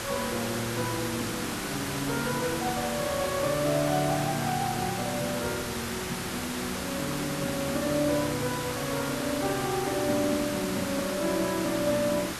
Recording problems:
hiss; slope -2 dB per octave, SNR 3 dB

